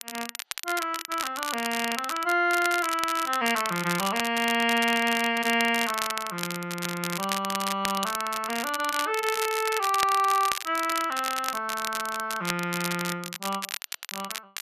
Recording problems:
crackling; vinyl, SNR 7 dB

